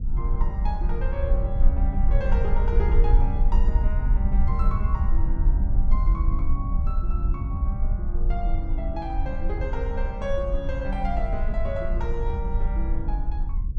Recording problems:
low-frequency rumble; below 56 Hz, strongest tone 24 Hz, SNR -7 dB

